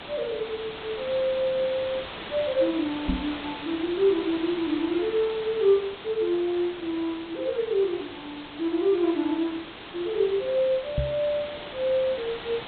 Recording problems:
low-pass filter; nothing above 4 kHz
background hiss; SNR 11 dB
knock on the microphone; at 3 s and at 11 s; peak +3 dB vs average level

